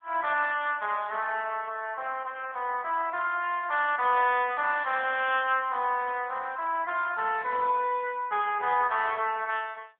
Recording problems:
telephone audio; 370 Hz to 3.4 kHz, AMR-NB

